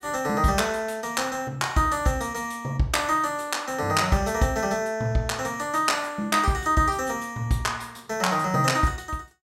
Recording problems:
none

